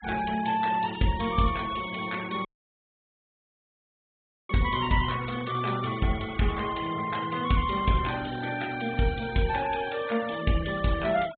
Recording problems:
low-pass filter; nothing above 4 kHz
noise reduction artefacts; signal-to-artefact ratio 15 dB
dropout; at 2.5 s for 2 s

